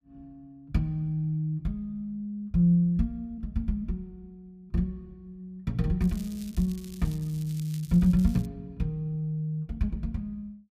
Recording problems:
crackle; from 6 to 8.5 s; loose cable, SNR 21 dB

